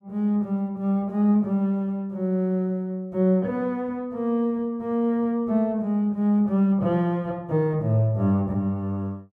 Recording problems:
none

